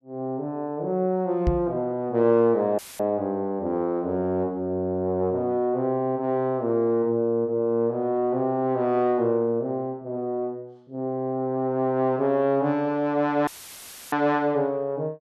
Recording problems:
microphone bump; at 1.5 s; peak +4 dB vs average level
audio cutting out; at 3 s and at 13 s for 0.5 s; filled with static

